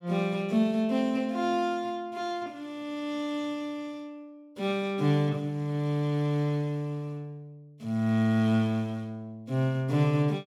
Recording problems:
none

